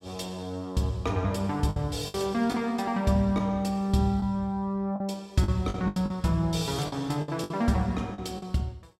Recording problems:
lost packets; 7% of the sound replaced, filled with the last packet

